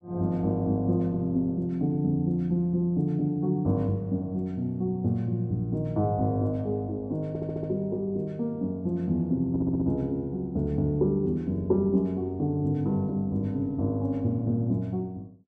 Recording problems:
audio stuttering; at 7.5 s and at 9.5 s

